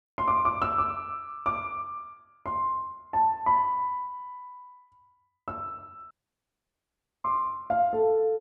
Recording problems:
audio cutting out; at 6 s for 1 s

